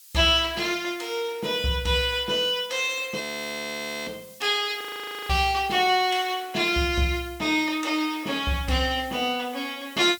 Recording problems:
hiss; slope +7 dB per octave, SNR 22 dB
frozen audio; at 3 s for 1 s and at 5 s

